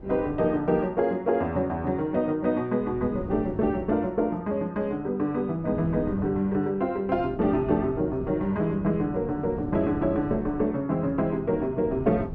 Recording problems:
wind noise; below 300 Hz, SNR 13 dB

